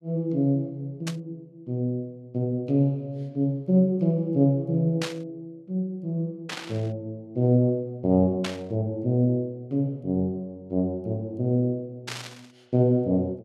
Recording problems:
static burst; 5 times, first at 1 s; peak -2 dB vs average level

